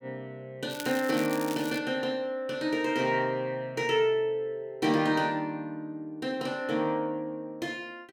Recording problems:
crackle; from 0.5 to 2 s; loose cable, SNR 12 dB

